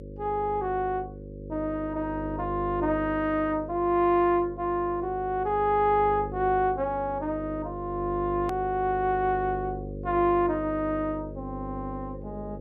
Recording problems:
hum; 50 Hz, harmonics up to 550 Hz, SNR 11 dB
click at an edit; at 8.5 s

